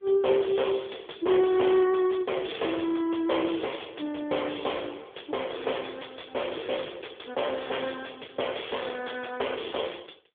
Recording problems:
telephone audio; 280 Hz to 3.4 kHz, AMR-NB
distorted audio; soft clipping, signal-to-distortion ratio 11 dB

